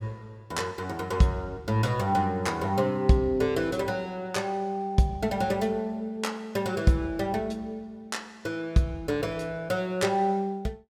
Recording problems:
none

